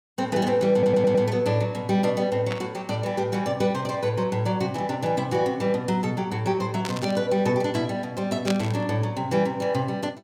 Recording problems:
stutter; at 0.5 s
static burst; at 2.5 s, at 7 s and at 8.5 s; peak -2 dB vs average level

